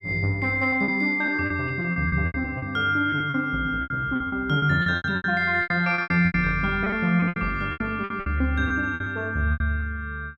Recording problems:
lost packets; 17% of the sound replaced, filled with repeated pitch periods

